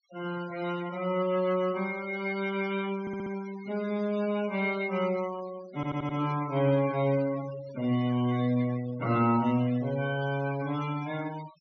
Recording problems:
treble missing; nothing above 6.3 kHz
denoising artefacts; signal-to-artefact ratio 17 dB
audio stuttering; at 3 s and at 6 s

